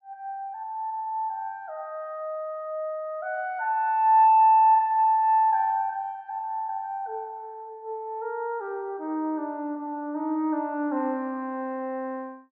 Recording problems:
none

